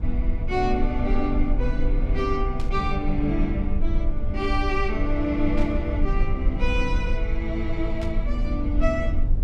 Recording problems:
rumble; below 54 Hz, SNR 0 dB
burst of static; at 2.5 s, at 5.5 s and at 8 s; peak -9 dB vs average level

